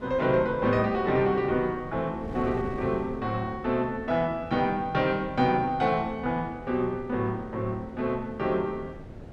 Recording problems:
wind noise; below 400 Hz, SNR 15 dB

